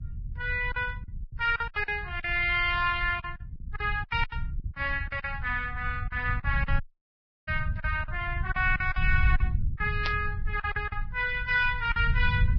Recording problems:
lossy compression; Vorbis, log-spectral distance 2 dB, nothing above 5.2 kHz
low-frequency rumble; below 86 Hz, SNR 6 dB
lost packets; 12% of the sound replaced, filled with silence
audio cutting out; at 7 s for 0.5 s
burst of static; at 10 s; peak +1 dB vs average level

